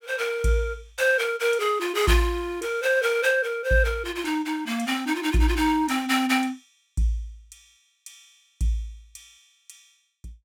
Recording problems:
none

